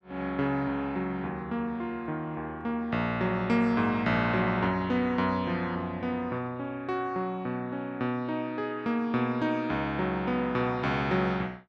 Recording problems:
none

